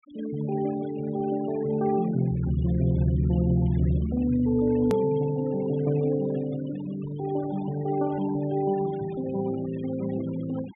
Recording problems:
treble cut off; nothing above 3.6 kHz
noise reduction artefacts; signal-to-artefact ratio 21 dB
edit click; at 5 s

